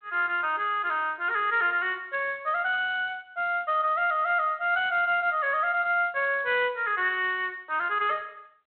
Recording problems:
phone line; 320 Hz to 3.3 kHz, G.726

